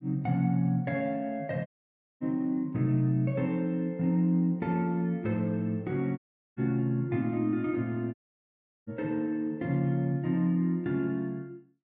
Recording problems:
audio cutting out; at 1.5 s for 0.5 s, at 6 s and at 8 s for 0.5 s

